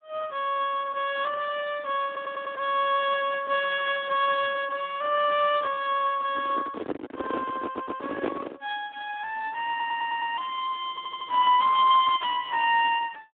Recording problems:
telephone audio; 260 Hz to 3.5 kHz, Speex
audio stuttering; 4 times, first at 2 s
handling noise; from 6.5 to 8.5 s; peak 0 dB vs average level

